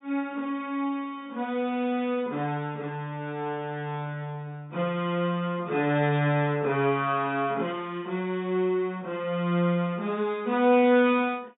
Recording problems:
treble missing; nothing above 4 kHz

